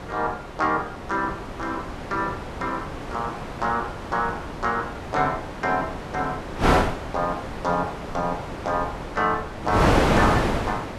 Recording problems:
wind on the microphone; below 1.1 kHz, SNR 1 dB

